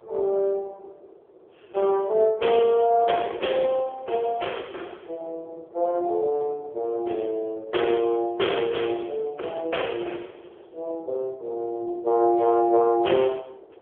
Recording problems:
telephone audio; 300 Hz to 3.3 kHz, AMR-NB
wind noise; below 550 Hz, SNR 21 dB

